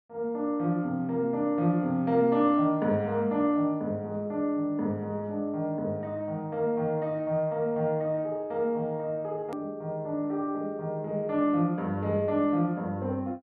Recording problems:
edit click; at 9.5 s

